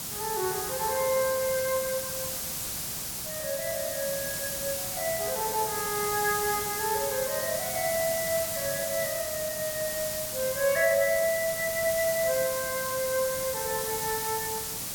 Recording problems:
background hiss; SNR 1 dB

